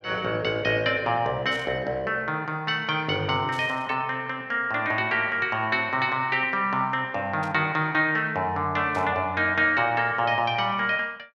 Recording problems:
burst of static; 4 times, first at 1.5 s; peak -14 dB vs average level

